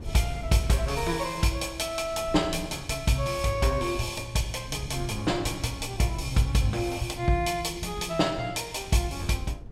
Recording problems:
wind noise; below 130 Hz, SNR 15 dB

